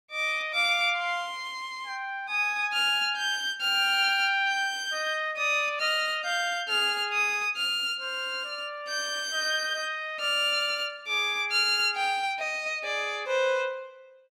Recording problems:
none

